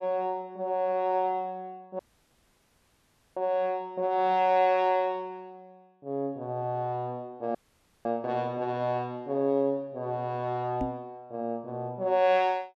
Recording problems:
dropout; at 2 s for 1.5 s and at 7.5 s for 0.5 s
microphone thump; at 11 s; peak -1 dB vs average level

